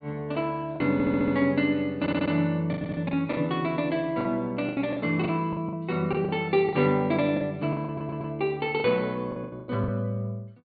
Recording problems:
treble cut off; nothing above 4.6 kHz
packet loss; 11% of the sound replaced, filled with the last packet
stutter; 4 times, first at 1 s

